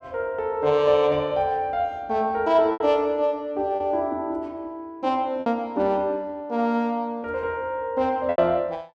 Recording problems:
packet loss; 3% of the sound replaced, filled with repeated pitch periods

